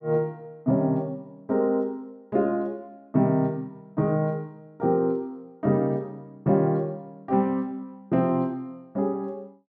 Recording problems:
none

